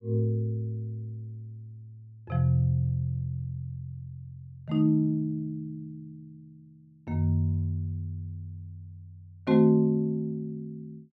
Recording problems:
none

